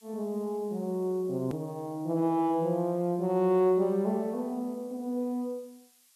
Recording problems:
hiss; slope +5 dB per octave, SNR 30 dB
hard cut with a click; at 1.5 s

